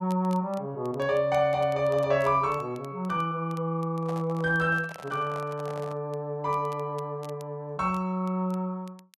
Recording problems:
crackling; vinyl, SNR 28 dB
microphone handling noise; from 4 to 6 s; peak -10 dB vs average level

